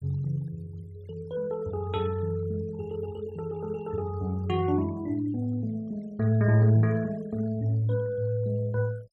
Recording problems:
denoising artefacts; signal-to-artefact ratio 26 dB

